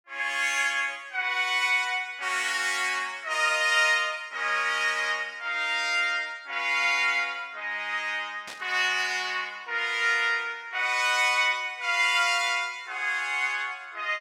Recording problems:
static burst; at 8.5 s; peak -10 dB vs average level

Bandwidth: 17 kHz